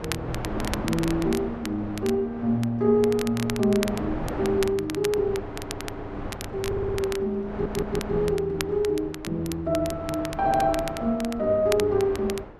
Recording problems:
wind on the microphone; below 730 Hz, SNR 11 dB
crackling; vinyl, SNR 13 dB
audio stuttering; 4 times, first at 5.5 s

